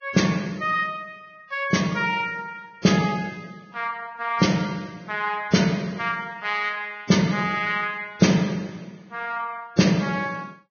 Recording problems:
lossy compression; Vorbis, log-spectral distance 3 dB, nothing above 6.5 kHz

